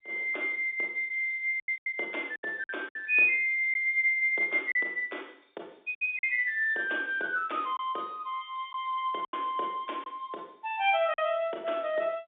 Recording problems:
phone line; 300 Hz to 3.6 kHz, G.711
lost packets; 5% of the sound replaced, filled with silence

